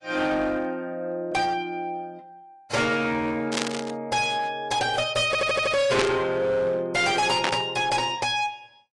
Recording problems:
lossy compression; AAC, log-spectral distance 3 dB, nothing above 10.1 kHz
distortion; hard clipping, uneven, signal-to-distortion ratio 8 dB
burst of static; at 3.5 s, at 6 s and at 7.5 s; peak +3 dB vs average level
stutter; at 5.5 s

